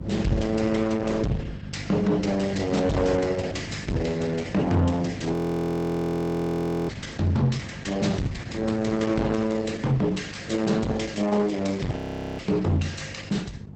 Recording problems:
codec artefacts; Opus, log-spectral distance 4 dB, nothing above 17.7 kHz
distorted audio; soft clipping, signal-to-distortion ratio 7 dB
hum; 50 Hz, harmonics up to 550 Hz, SNR 15 dB
wind noise; below 270 Hz, SNR 15 dB
audio freezing; at 5.5 s for 1.5 s and at 12 s

